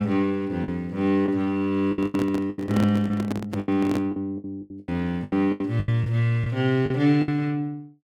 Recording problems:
lost packets; 13% of the sound replaced, filled with the last packet
handling noise; from 2 to 4 s; peak +1 dB vs average level

